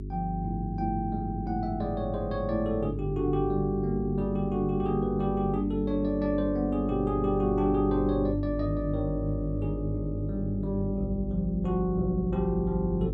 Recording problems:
electrical hum; 50 Hz, harmonics up to 400 Hz, SNR 7 dB

